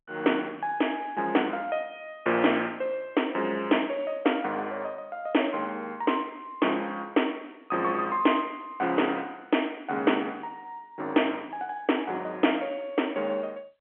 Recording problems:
telephone audio; 220 Hz to 3.2 kHz, G.711

